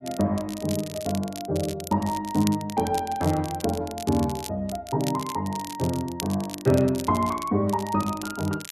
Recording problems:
crackle; vinyl, SNR 13 dB

